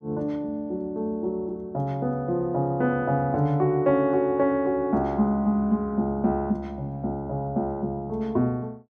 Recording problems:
none

